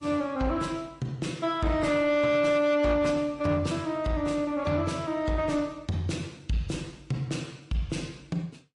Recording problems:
lossy compression; AAC, then MP3, log-spectral distance 3 dB, nothing above 10.7 kHz
distorted audio; soft clipping, signal-to-distortion ratio 12 dB

